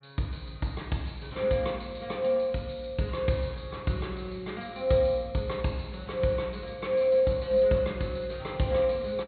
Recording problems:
low-pass filter; nothing above 4.1 kHz

